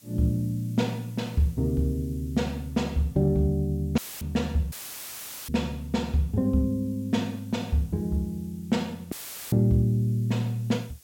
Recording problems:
hiss; slope +1 dB per octave, SNR 27 dB
dropout; at 4 s, at 4.5 s for 1 s and at 9 s; filled with static

